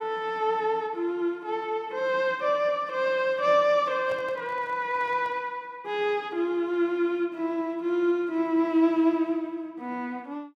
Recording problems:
microphone handling noise; from 4 to 5.5 s; peak -11 dB vs average level

